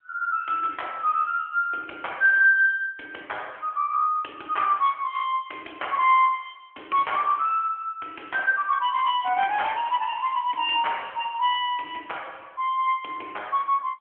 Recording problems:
telephone audio; 260 Hz to 3.3 kHz, AMR-NB

